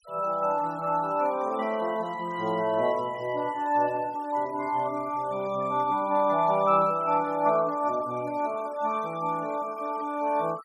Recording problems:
noise reduction artefacts; signal-to-artefact ratio 24 dB

